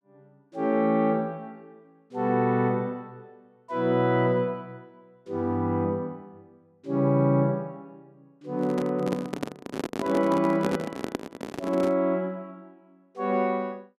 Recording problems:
handling noise; from 8.5 to 12 s; peak +2 dB vs average level

